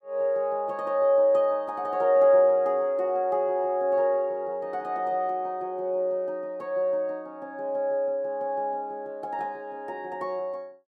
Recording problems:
none

